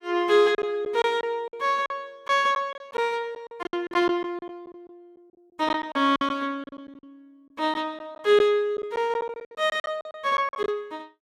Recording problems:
packet loss; 13% of the sound replaced, filled with silence

